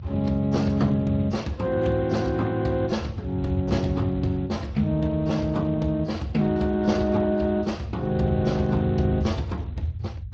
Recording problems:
lossy compression; AAC, then Speex, log-spectral distance 3 dB
rumble; below 110 Hz, SNR 10 dB

